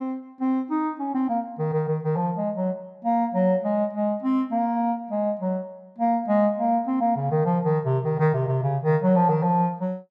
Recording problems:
none

